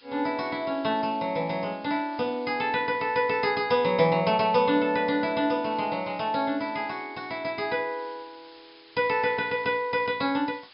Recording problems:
low-pass filter; nothing above 5.5 kHz
hiss; SNR 26 dB

